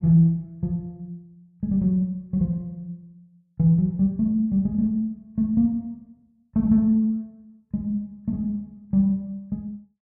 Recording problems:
none

